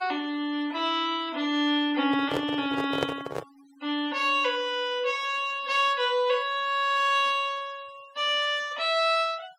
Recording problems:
denoising artefacts; signal-to-artefact ratio 24 dB
handling noise; from 2 to 3.5 s; peak +2 dB vs average level

